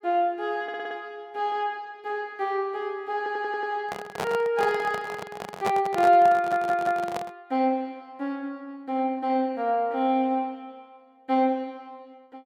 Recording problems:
audio stuttering; at 0.5 s, at 3 s and at 6.5 s
microphone handling noise; from 4 to 7.5 s; peak +1 dB vs average level

